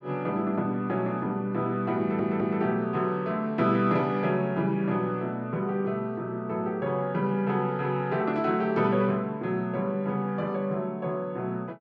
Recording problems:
audio stuttering; at 2 s

